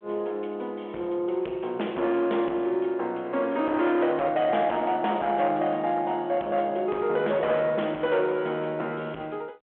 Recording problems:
phone line; 260 Hz to 3.5 kHz, G.726
distortion; soft clipping, signal-to-distortion ratio 12 dB

